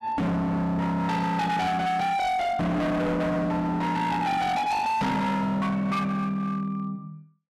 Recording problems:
distortion; hard clipping, signal-to-distortion ratio 7 dB

